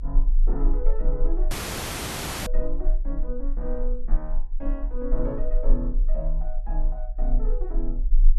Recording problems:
low-frequency rumble; below 32 Hz, strongest tone 28 Hz, SNR -7 dB
audio cutting out; at 1.5 s for 1 s

